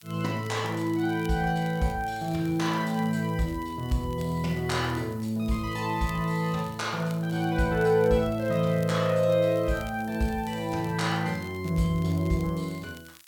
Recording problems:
hiss; slope +4 dB per octave, SNR 28 dB
crackle; vinyl, SNR 25 dB

